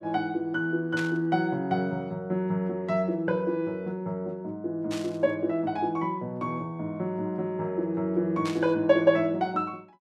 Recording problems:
static burst; at 1 s, at 5 s and at 8.5 s; peak -5 dB vs average level

